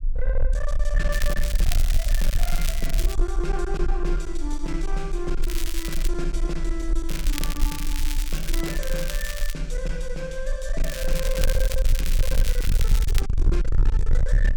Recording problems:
distorted audio; hard clipping, uneven, signal-to-distortion ratio 6 dB
low-frequency rumble; below 42 Hz, strongest tone 24 Hz, SNR -5 dB
crackling; 4 times, first at 1 s; loose cable, SNR 2 dB

